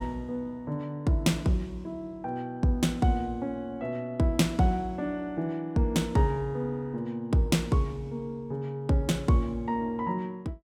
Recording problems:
none

